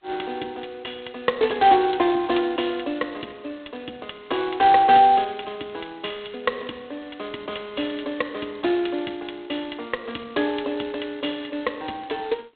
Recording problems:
telephone audio; 240 Hz to 4 kHz, G.726

